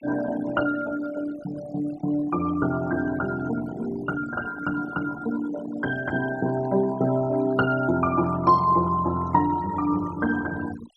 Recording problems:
denoising artefacts; signal-to-artefact ratio 17 dB

